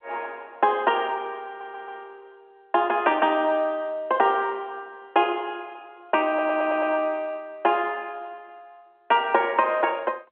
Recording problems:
telephone audio; 190 Hz to 3.3 kHz, G.711
stutter; at 1.5 s and at 6.5 s

